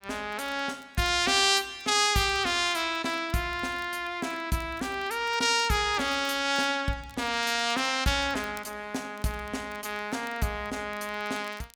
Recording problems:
crackle; vinyl, SNR 27 dB

